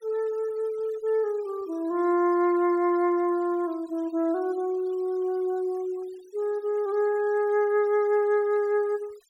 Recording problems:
denoising artefacts; signal-to-artefact ratio 28 dB

